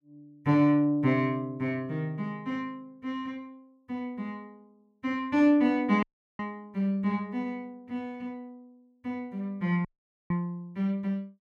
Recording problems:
audio cutting out; at 6 s and at 10 s

